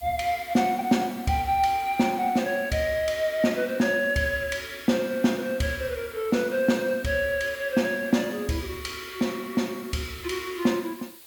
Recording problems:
background hiss; slope 0 dB per octave, SNR 19 dB

